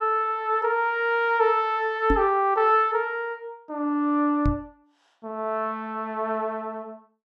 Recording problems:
knock on the microphone; at 2 s and at 4.5 s; peak +3 dB vs average level

